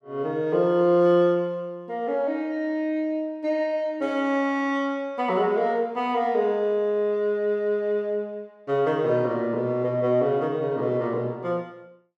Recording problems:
none

